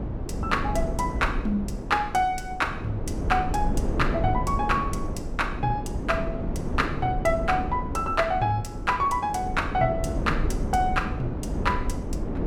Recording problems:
wind noise; below 260 Hz, SNR 4 dB

